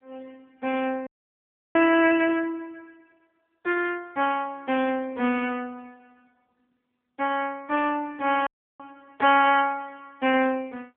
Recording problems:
phone line; 280 Hz to 3.3 kHz, AMR-NB
dropout; at 1 s for 0.5 s and at 8.5 s

